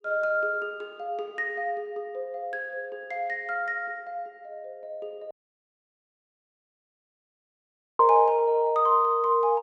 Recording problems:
audio cutting out; at 5.5 s for 2.5 s

